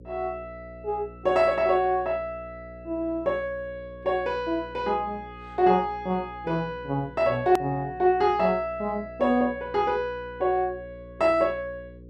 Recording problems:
electrical hum; 60 Hz, harmonics up to 540 Hz, SNR 20 dB
hard cut with a click; at 7.5 s

